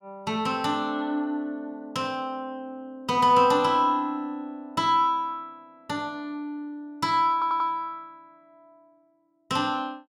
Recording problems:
stutter; at 7.5 s

